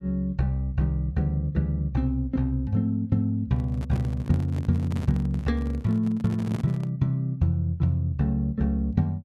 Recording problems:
microphone handling noise; from 3.5 to 7 s; peak -2 dB vs average level

